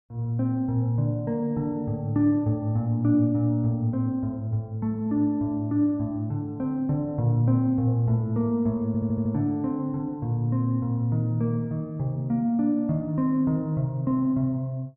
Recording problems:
stutter; at 9 s

